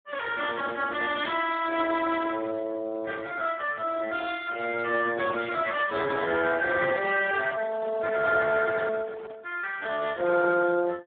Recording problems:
telephone audio; 280 Hz to 2.7 kHz, Speex
microphone handling noise; from 6 to 9.5 s; peak -8 dB vs average level

